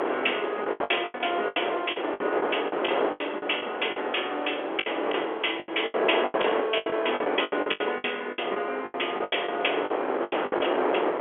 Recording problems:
phone line; 300 Hz to 3.4 kHz, G.711
hiss; SNR 23 dB
wind noise; below 980 Hz, SNR 0 dB
packet loss; 18% of the sound replaced, filled with the last packet

